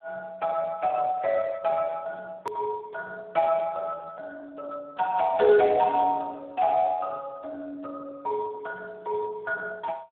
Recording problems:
telephone audio; 220 Hz to 2.3 kHz, Speex
edit click; at 2.5 s

